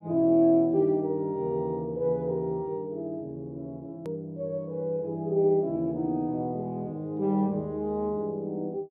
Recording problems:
edit click; at 4 s

